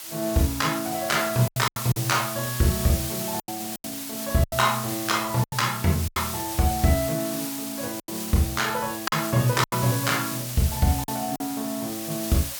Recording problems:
hiss; slope +2 dB per octave, SNR 6 dB
packet loss; 7% of the sound replaced, filled with silence

